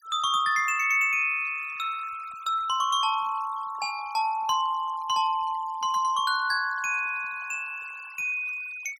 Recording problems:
noise reduction artefacts; signal-to-artefact ratio 23 dB

